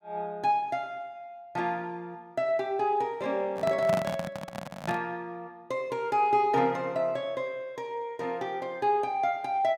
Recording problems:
handling noise; from 3.5 to 5 s; peak +1 dB vs average level

